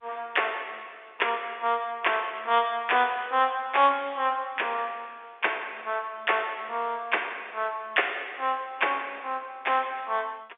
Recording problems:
telephone audio; 280 Hz to 3.6 kHz, G.711

